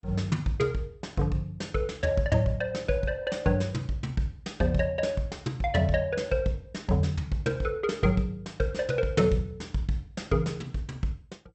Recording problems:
lossy codec; MP2, log-spectral distance 2 dB, nothing above 7.8 kHz

